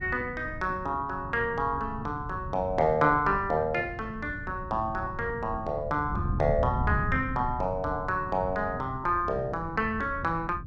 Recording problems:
wind on the microphone; below 150 Hz, SNR 9 dB

